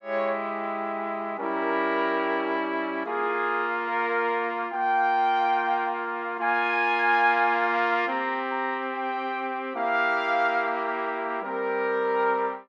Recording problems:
none

